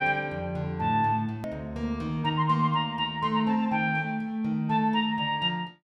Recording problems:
click at an edit; at 1.5 s

